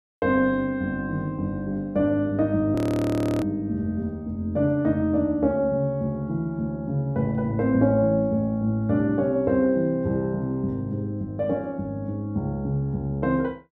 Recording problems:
frozen audio; at 3 s for 0.5 s

